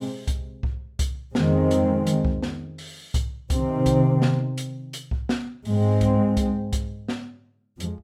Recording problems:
none

